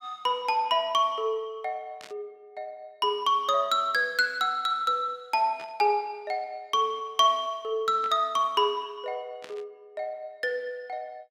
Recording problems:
burst of static; 4 times, first at 2 s; peak -12 dB vs average level

